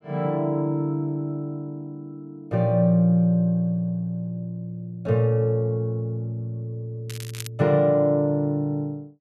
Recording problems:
crackle; at 7 s; loose cable, SNR 15 dB

